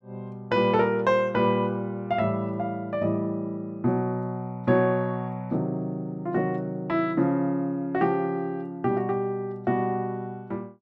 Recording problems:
none

